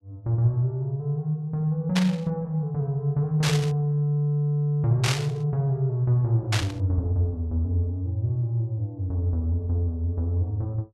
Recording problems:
burst of static; 4 times, first at 2 s; peak +3 dB vs average level

